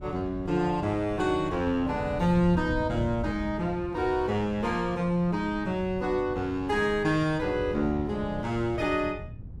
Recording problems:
wind on the microphone; below 140 Hz, SNR 12 dB

